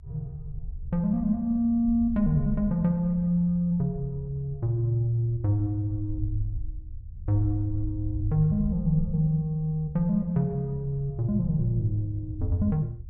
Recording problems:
low-frequency rumble; below 74 Hz, SNR 12 dB

